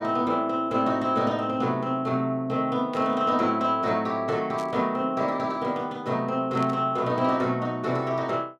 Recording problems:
burst of static; at 3 s, at 4.5 s and at 6.5 s; peak -12 dB vs average level

